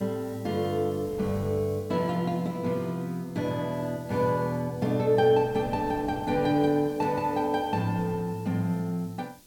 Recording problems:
background hiss; slope +5 dB per octave, SNR 26 dB
wind on the microphone; below 390 Hz, SNR 20 dB

